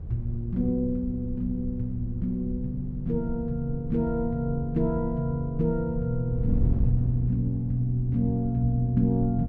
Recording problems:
wind on the microphone; below 86 Hz, SNR 7 dB

